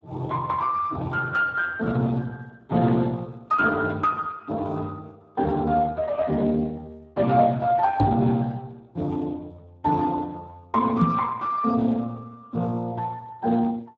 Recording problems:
lossy codec; Speex, log-spectral distance 3 dB
microphone bump; at 8 s and at 11 s; peak +6 dB vs average level

